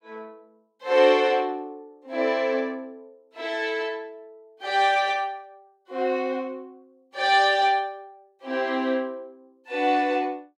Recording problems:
none

